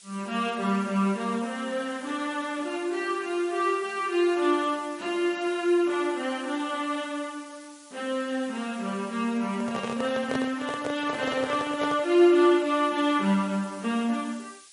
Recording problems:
lossy codec; MP3, log-spectral distance 7 dB, nothing above 9.8 kHz
hiss; SNR 22 dB
microphone handling noise; from 9.5 to 12 s; peak -2 dB vs average level

